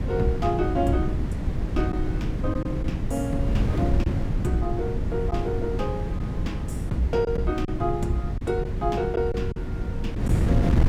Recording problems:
wind noise; below 170 Hz, SNR -1 dB
packet loss; 3% of the sound replaced, filled with silence

